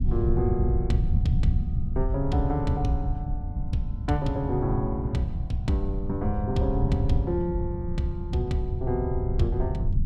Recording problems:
low-frequency rumble; below 110 Hz, SNR 1 dB

